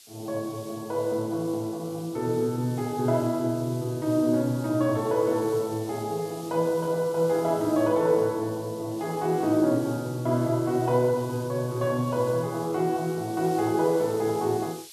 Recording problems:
hiss; SNR 19 dB

